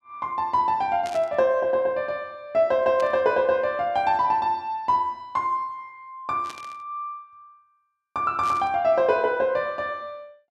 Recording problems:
static burst; 4 times, first at 1 s; peak -11 dB vs average level

